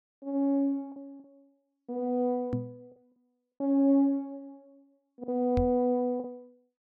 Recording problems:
packet loss; 5% of the sound replaced, filled with the last packet
microphone thump; at 2.5 s and at 5.5 s; peak 0 dB vs average level

